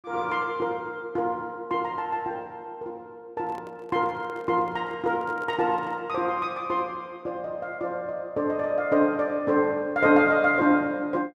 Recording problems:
microphone handling noise; from 3.5 to 6 s; peak -13 dB vs average level

